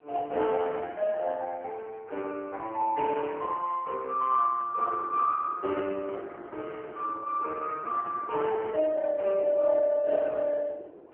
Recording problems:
phone line; 280 Hz to 3.3 kHz, AMR-NB
wind noise; below 580 Hz, SNR 19 dB

